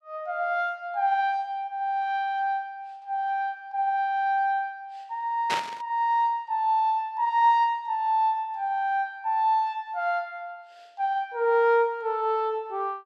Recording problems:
burst of static; at 5.5 s; peak +1 dB vs average level

